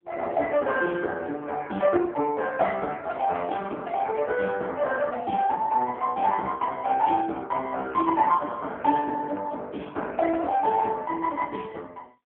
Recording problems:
telephone audio; 240 Hz to 3.3 kHz, AMR-NB

